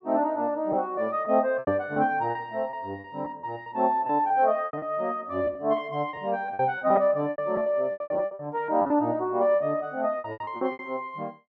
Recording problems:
packet loss; 14% of the sound replaced, filled with repeated pitch periods

